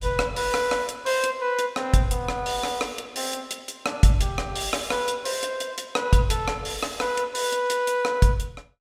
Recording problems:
none

